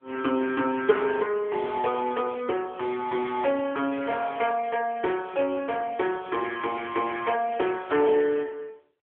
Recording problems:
telephone audio; 280 Hz to 3.3 kHz, AMR-NB

